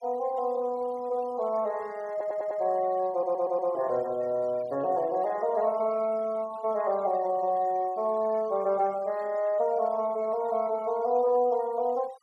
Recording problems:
noise reduction artefacts; signal-to-artefact ratio 25 dB
stutter; at 2 s and at 3 s

